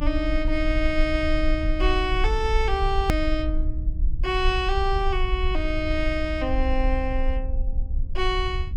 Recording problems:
low-frequency rumble; below 54 Hz, strongest tone 24 Hz, SNR 2 dB
hard cut with a click; at 3 s

